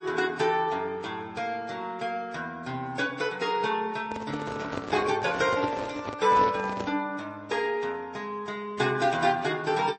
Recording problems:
lossy codec; MP3, then AAC, log-spectral distance 3 dB, nothing above 8 kHz
handling noise; from 4 to 7 s; peak -1 dB vs average level

